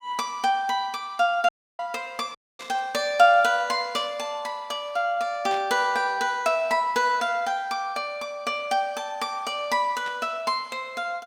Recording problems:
audio cutting out; at 1.5 s and at 2.5 s
static burst; 4 times, first at 2.5 s; peak -9 dB vs average level

